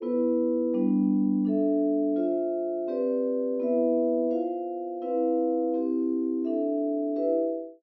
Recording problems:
treble missing; nothing above 6.1 kHz

